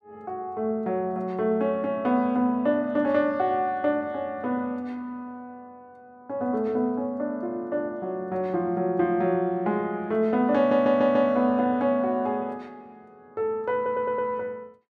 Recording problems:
audio stuttering; at 11 s and at 14 s

